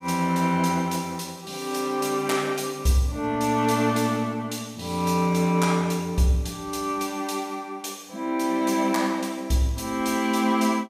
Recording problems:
none

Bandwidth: 15.5 kHz